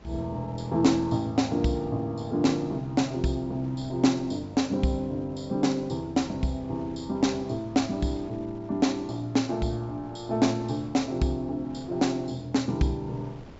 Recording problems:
low-pass filter; nothing above 8 kHz
wind noise; below 570 Hz, SNR 23 dB

